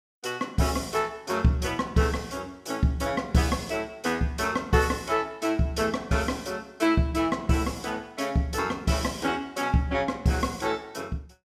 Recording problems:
none

